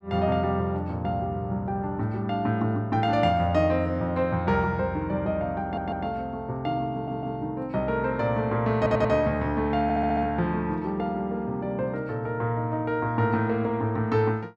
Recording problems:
audio stuttering; 4 times, first at 5.5 s

